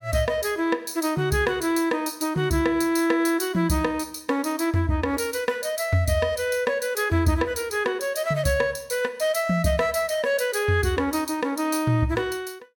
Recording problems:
none

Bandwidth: 18 kHz